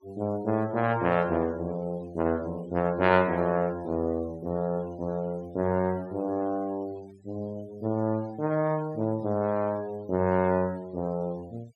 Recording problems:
noise reduction artefacts; signal-to-artefact ratio 24 dB

